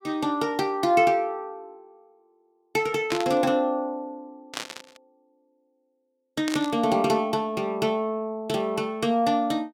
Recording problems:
burst of static; at 3 s, at 4.5 s and at 6.5 s; peak -2 dB vs average level

